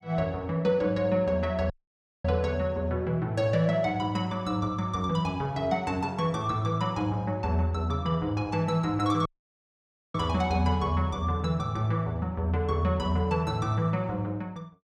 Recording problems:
dropout; at 1.5 s for 0.5 s and at 9.5 s for 1 s

